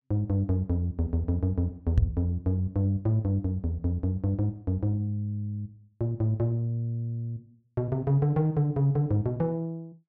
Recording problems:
microphone bump; at 2 s; peak +7 dB vs average level

